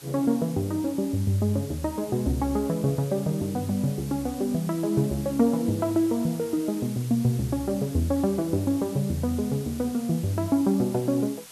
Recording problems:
background hiss; slope 0 dB per octave, SNR 18 dB

